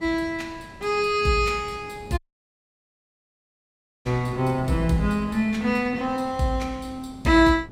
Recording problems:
wind noise; below 370 Hz, SNR 19 dB
dropout; at 2 s for 2 s

